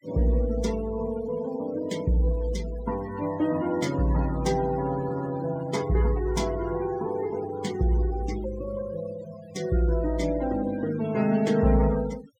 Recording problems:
denoising artefacts; signal-to-artefact ratio 16 dB

